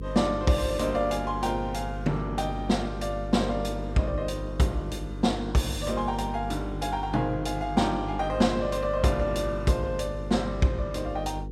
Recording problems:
electrical hum; 50 Hz, harmonics up to 500 Hz, SNR 8 dB

